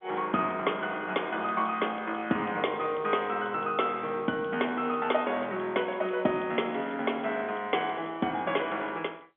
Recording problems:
phone line; 190 Hz to 3.4 kHz, G.711

